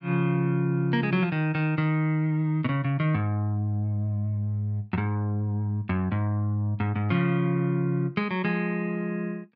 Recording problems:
none

